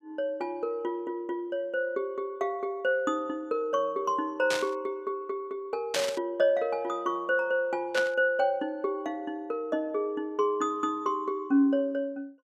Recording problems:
burst of static; at 4.5 s, at 6 s and at 8 s; peak +4 dB vs average level

